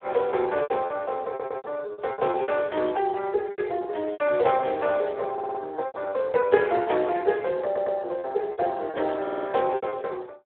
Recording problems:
phone line; 320 Hz to 2.6 kHz, Speex
packet loss; 11% of the sound replaced, filled with repeated pitch periods
stutter; 4 times, first at 1.5 s

